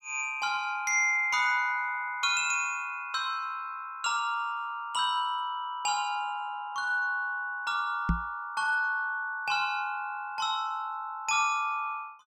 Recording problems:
knock on the microphone; at 8 s; peak +5 dB vs average level

